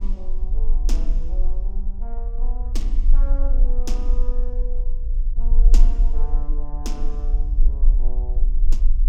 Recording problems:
hum; 50 Hz, harmonics up to 900 Hz, SNR 22 dB
rumble; below 34 Hz, strongest tone 18 Hz, SNR -15 dB

